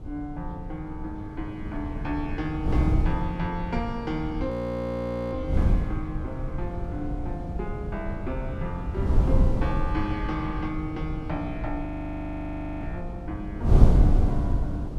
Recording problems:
wind noise; below 120 Hz, SNR -4 dB
audio freezing; at 4.5 s for 1 s and at 12 s for 1 s

